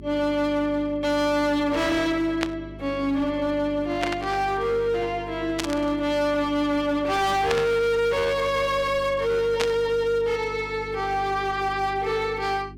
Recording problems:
distorted audio; hard clipping, signal-to-distortion ratio 7 dB
hum; 50 Hz, harmonics up to 400 Hz, SNR 17 dB
burst of static; 5 times, first at 2.5 s; peak +2 dB vs average level

